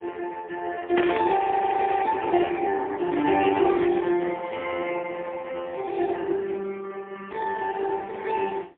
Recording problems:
telephone audio; 300 Hz to 2.8 kHz, AMR-NB, then MP3
static burst; at 1 s; peak -5 dB vs average level
frozen audio; at 1.5 s for 0.5 s

